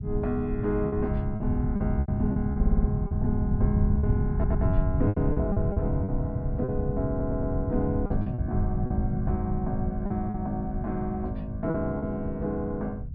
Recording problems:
treble cut off; nothing above 5.5 kHz
rumble; below 130 Hz, SNR -1 dB
packet loss; 8% of the sound replaced, filled with repeated pitch periods
audio stuttering; at 2.5 s, at 4.5 s and at 7 s

